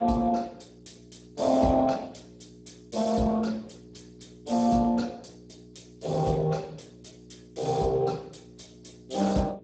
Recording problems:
codec artefacts; Speex, log-spectral distance 6 dB, nothing above 7.8 kHz
hum; 60 Hz, harmonics up to 420 Hz, SNR 24 dB

